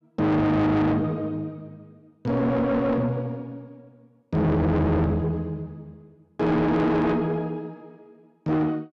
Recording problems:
distorted audio; soft clipping, signal-to-distortion ratio 6 dB

